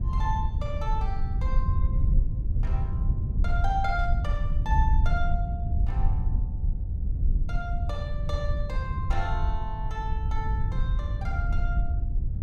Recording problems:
rumble; below 80 Hz, SNR -7 dB
static burst; at 4 s; peak -15 dB vs average level

